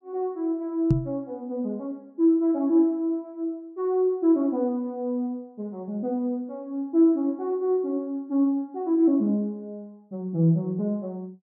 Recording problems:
knock on the microphone; at 1 s; peak +7 dB vs average level

